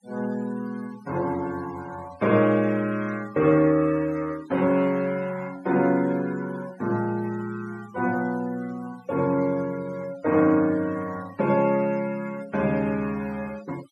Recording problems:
denoising artefacts; signal-to-artefact ratio 21 dB

